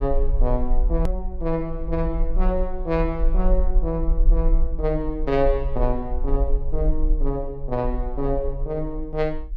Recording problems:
low-frequency rumble; below 40 Hz, strongest tone 22 Hz, SNR 0 dB
click at an edit; at 1 s

